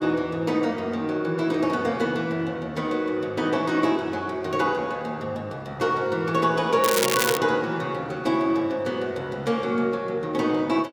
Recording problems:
crackle; at 7 s; loose cable, SNR 1 dB

